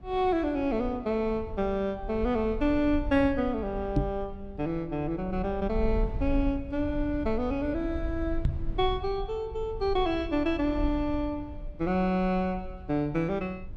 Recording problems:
low-frequency rumble; below 70 Hz, SNR 10 dB
microphone thump; at 4 s and at 8.5 s; peak +7 dB vs average level

